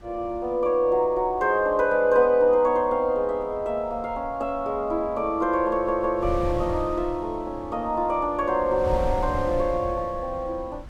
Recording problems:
wind noise; below 120 Hz, SNR 15 dB
audio stuttering; at 5.5 s

